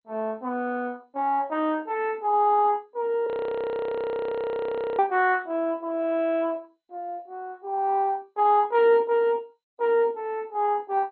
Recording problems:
lossy compression; MP2, log-spectral distance 2 dB, nothing above 4.2 kHz
frozen audio; at 3.5 s for 1.5 s

